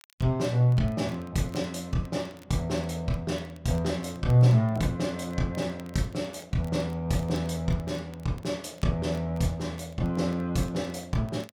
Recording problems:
crackling; vinyl, SNR 29 dB

